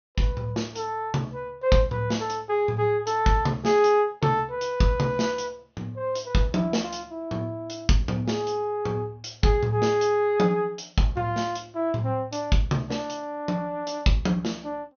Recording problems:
low-pass filter; nothing above 6.4 kHz

